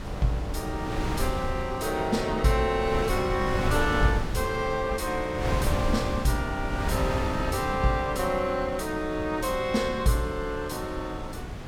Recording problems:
wind on the microphone; below 330 Hz, SNR 5 dB

